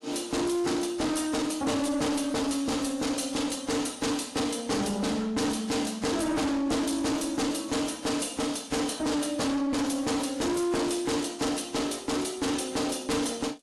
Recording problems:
codec artefacts; AAC, log-spectral distance 5 dB, nothing above 11.6 kHz
distorted audio; hard clipping, uneven, signal-to-distortion ratio 6 dB

